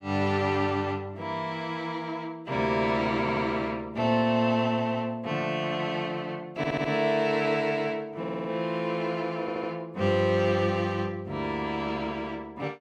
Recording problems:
stutter; 4 times, first at 3 s

